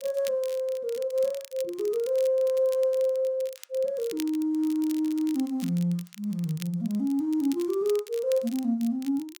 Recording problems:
crackle; vinyl, SNR 19 dB

